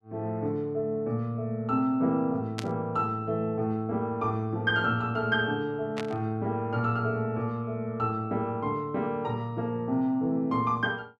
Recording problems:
burst of static; at 2.5 s and at 6 s; peak -2 dB vs average level

